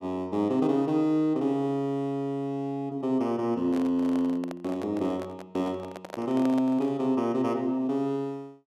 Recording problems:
handling noise; from 3.5 to 7 s; peak -5 dB vs average level

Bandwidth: 13.5 kHz